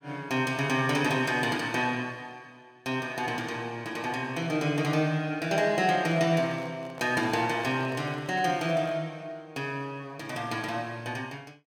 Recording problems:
handling noise; from 6 to 9 s; peak -10 dB vs average level

